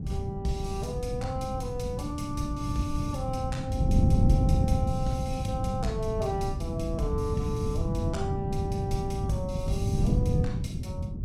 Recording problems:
wind on the microphone; below 170 Hz, SNR -4 dB

